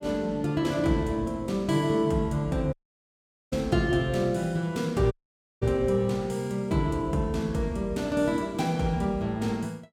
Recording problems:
dropout; at 2.5 s for 1 s and at 5 s for 0.5 s

